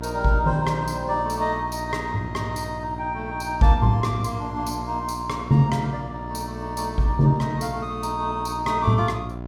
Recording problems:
mains hum; 60 Hz, harmonics up to 1.1 kHz, SNR 11 dB

